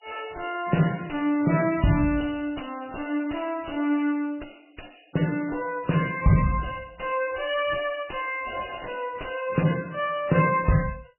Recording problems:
codec artefacts; MP3, log-spectral distance 8 dB, nothing above 2.8 kHz
distorted audio; soft clipping, signal-to-distortion ratio 10 dB

